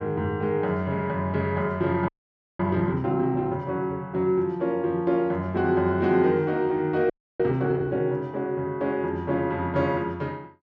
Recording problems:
audio freezing; at 2 s for 0.5 s and at 7 s

